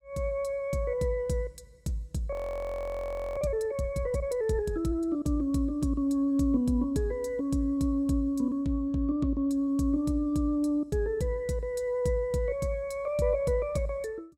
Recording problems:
frozen audio; at 2.5 s for 1 s

